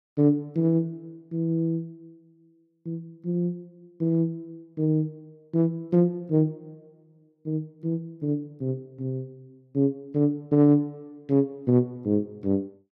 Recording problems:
none

